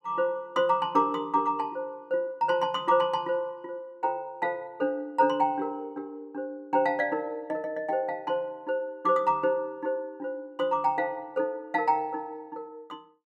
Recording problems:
none

